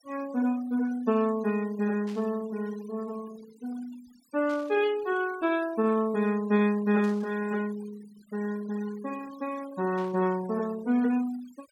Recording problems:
noise reduction artefacts; signal-to-artefact ratio 19 dB
burst of static; 4 times, first at 2 s; peak -16 dB vs average level

